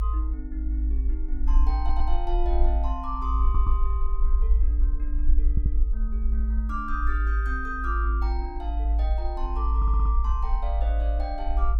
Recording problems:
low-frequency rumble; below 54 Hz, SNR -8 dB
audio stuttering; 4 times, first at 2 s

